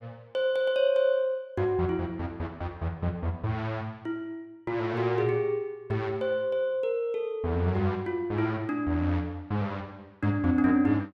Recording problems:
none

